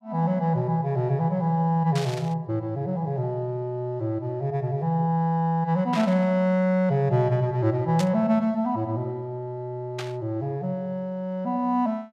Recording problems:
static burst; 4 times, first at 2 s; peak -3 dB vs average level

